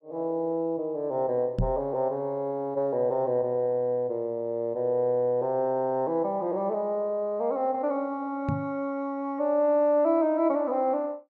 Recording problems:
microphone bump; at 1.5 s and at 8.5 s; peak +3 dB vs average level

